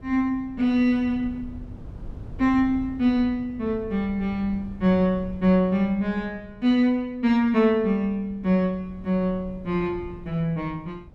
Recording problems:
wind noise; below 150 Hz, SNR 19 dB

